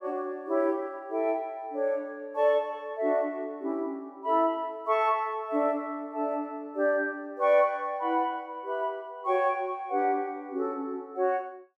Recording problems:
none

